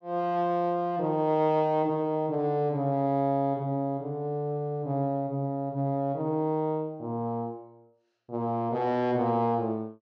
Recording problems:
none

